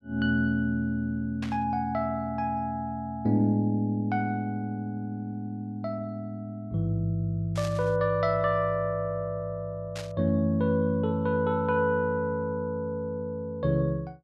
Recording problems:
burst of static; at 1.5 s, at 7.5 s and at 10 s; peak -8 dB vs average level

